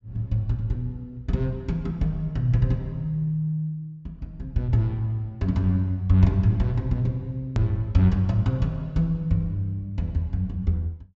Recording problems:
treble cut off; nothing above 7.7 kHz
edit click; at 7.5 s

